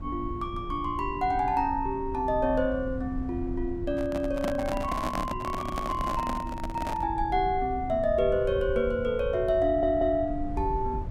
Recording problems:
electrical hum; 60 Hz, harmonics up to 1.4 kHz, SNR 22 dB
low-frequency rumble; below 92 Hz, SNR 11 dB
handling noise; from 4 to 7 s; peak -1 dB vs average level
stutter; at 9.5 s

